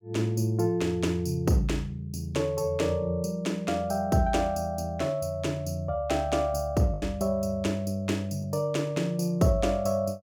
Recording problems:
packet loss; 1% of the sound replaced, filled with the last packet

